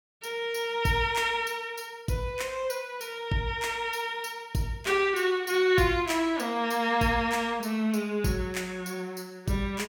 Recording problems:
none

